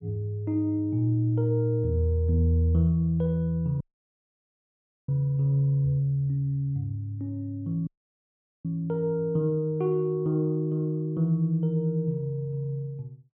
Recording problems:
dropout; at 4 s for 1.5 s and at 8 s for 1 s

